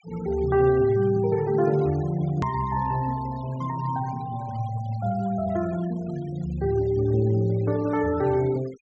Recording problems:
low-pass filter; nothing above 8 kHz
denoising artefacts; signal-to-artefact ratio 22 dB
click at an edit; at 2.5 s

